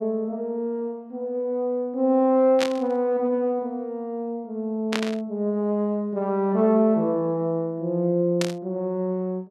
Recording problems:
burst of static; at 2.5 s, at 5 s and at 8.5 s; peak +1 dB vs average level

